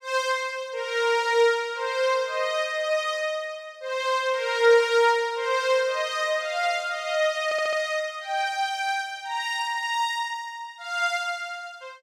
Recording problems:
stutter; at 7.5 s

